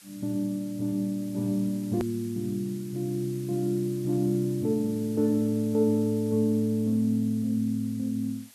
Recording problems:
hiss; slope +2 dB per octave, SNR 22 dB
click at an edit; at 2 s

